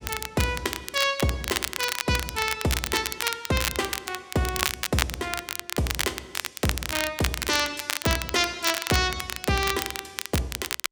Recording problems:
crackle; vinyl, SNR 3 dB

